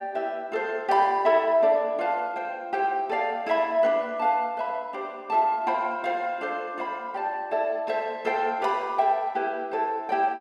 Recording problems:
none

